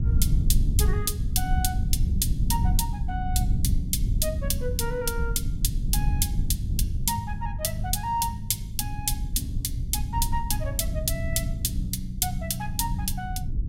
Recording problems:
low-frequency rumble; below 96 Hz, SNR 0 dB

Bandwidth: 16 kHz